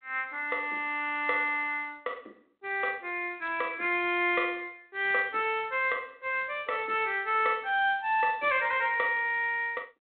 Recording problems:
telephone audio; 300 Hz to 3.8 kHz, G.726

